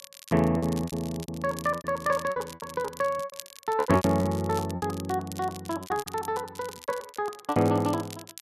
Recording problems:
crackling; vinyl, SNR 16 dB
lost packets; 14% of the sound replaced, filled with repeated pitch periods

